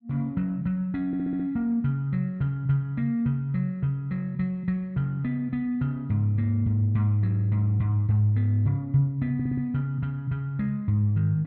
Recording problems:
audio stuttering; at 1 s and at 9.5 s

